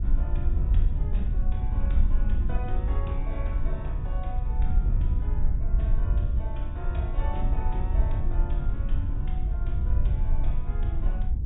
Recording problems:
low-pass filter; nothing above 4 kHz
wind on the microphone; below 62 Hz, SNR -11 dB

